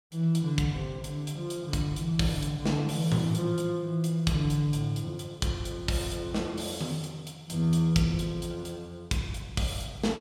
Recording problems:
none

